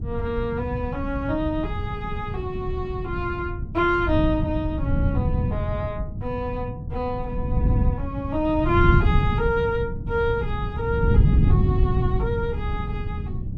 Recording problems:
wind noise; below 140 Hz, SNR -1 dB

